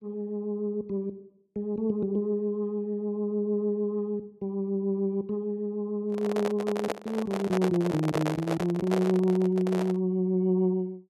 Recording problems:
microphone handling noise; from 6 to 10 s; peak +2 dB vs average level

